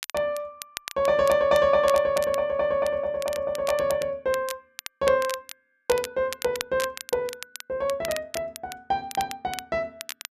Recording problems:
crackling; vinyl, SNR 13 dB

